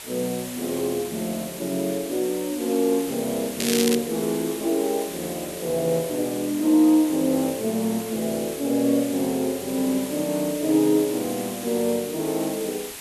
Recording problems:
background hiss; slope 0 dB per octave, SNR 11 dB
crackle; at 3.5 s; loose cable, SNR 3 dB

